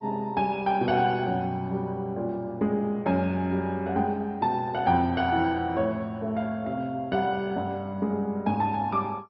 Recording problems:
codec artefacts; MP2, log-spectral distance 2 dB, nothing above 4.8 kHz

